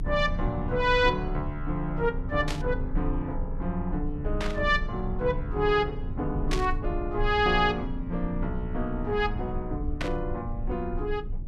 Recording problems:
rumble; below 62 Hz, strongest tone 26 Hz, SNR 7 dB
static burst; 4 times, first at 2.5 s; peak 0 dB vs average level

